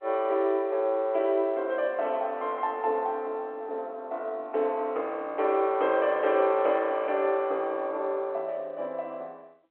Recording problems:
phone line; 300 Hz to 3.3 kHz, G.711

